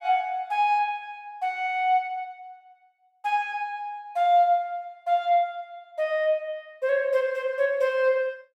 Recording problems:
none

